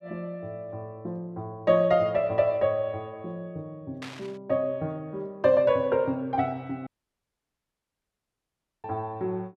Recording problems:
static burst; at 4 s; peak -9 dB vs average level
audio cutting out; at 7 s for 2 s

